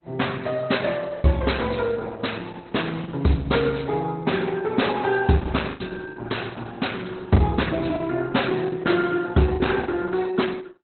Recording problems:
lossy compression; Opus, log-spectral distance 5 dB, nothing above 4.1 kHz
packet loss; 4% of the sound replaced, filled with the last packet

